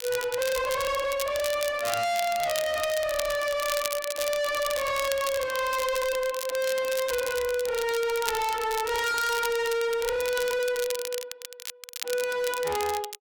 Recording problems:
distortion; hard clipping, uneven, signal-to-distortion ratio 6 dB
crackling; vinyl, SNR 9 dB

